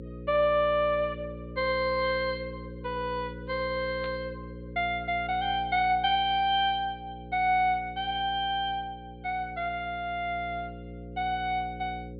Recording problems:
treble cut off; nothing above 4.5 kHz
hum; 60 Hz, harmonics up to 540 Hz, SNR 14 dB
static burst; at 4 s; peak -12 dB vs average level

